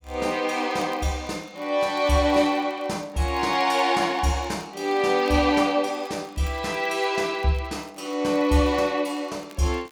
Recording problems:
crackling; vinyl, SNR 29 dB

